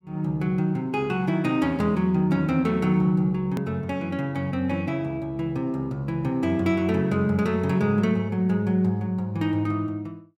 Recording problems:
hard cut with a click; at 3.5 s

